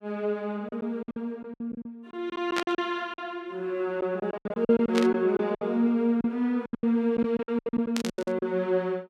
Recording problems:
packet loss; 15% of the sound replaced, filled with silence
burst of static; at 2.5 s, at 5 s and at 8 s; peak +2 dB vs average level

